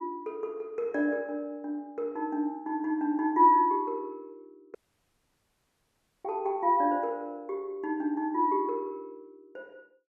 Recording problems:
dropout; at 5 s for 1.5 s

